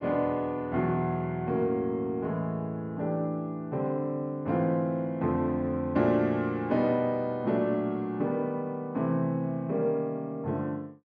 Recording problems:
none

